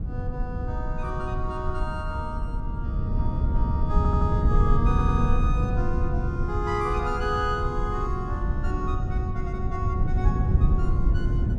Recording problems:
rumble; below 110 Hz, SNR -5 dB
stutter; at 4 s and at 5 s

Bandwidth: 13.5 kHz